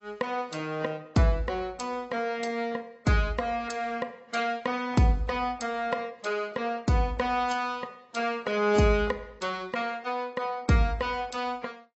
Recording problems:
codec artefacts; AAC, log-spectral distance 3 dB, nothing above 7.8 kHz

